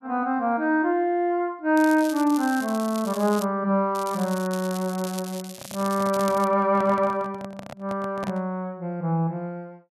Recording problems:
crackle; from 2 to 3.5 s and from 4 to 6.5 s; loose cable, SNR 15 dB
handling noise; from 5.5 to 8.5 s; peak -7 dB vs average level

